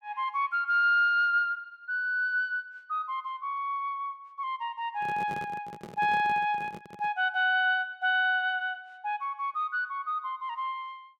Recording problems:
microphone handling noise; from 5 to 7 s; peak -9 dB vs average level

